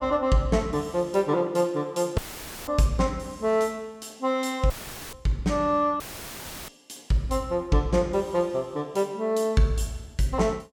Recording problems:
audio cutting out; at 2 s, at 4.5 s and at 6 s for 0.5 s; filled with static

